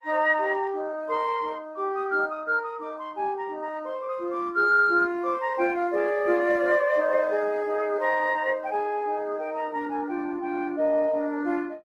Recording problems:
codec artefacts; Opus, log-spectral distance 3 dB, nothing above 18.3 kHz

